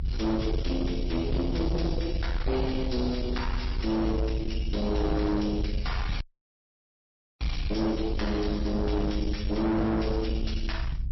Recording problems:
lossy compression; MP3, log-spectral distance 5 dB, nothing above 5.7 kHz
distortion; soft clipping, signal-to-distortion ratio 8 dB
low-frequency rumble; below 96 Hz, strongest tone 32 Hz, SNR 4 dB
dropout; at 6 s for 1 s

